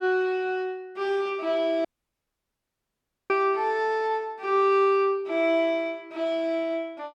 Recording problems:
dropout; at 2 s for 1.5 s

